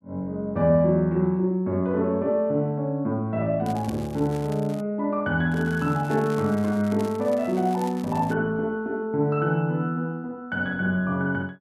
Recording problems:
crackle; from 3.5 to 5 s and from 5.5 to 8.5 s; loose cable, SNR 22 dB

